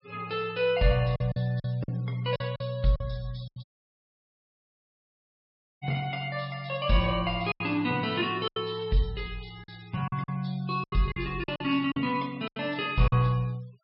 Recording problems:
low-pass filter; nothing above 5.3 kHz
denoising artefacts; signal-to-artefact ratio 24 dB
packet loss; 9% of the sound replaced, filled with silence
audio cutting out; at 3.5 s for 2 s

